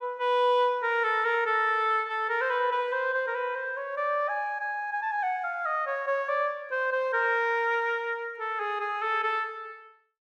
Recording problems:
none

